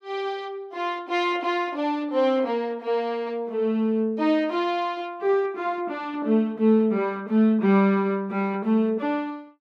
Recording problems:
none

